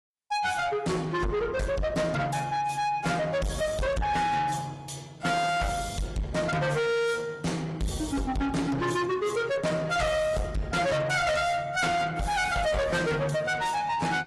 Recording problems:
codec artefacts; AAC, log-spectral distance 3 dB, nothing above 11.6 kHz
distortion; soft clipping, signal-to-distortion ratio 6 dB

